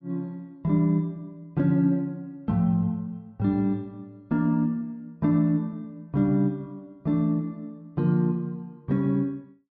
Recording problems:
none

